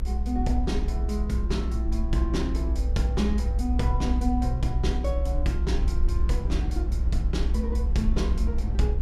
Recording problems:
rumble; below 60 Hz, strongest tone 58 Hz, SNR -3 dB

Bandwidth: 14.5 kHz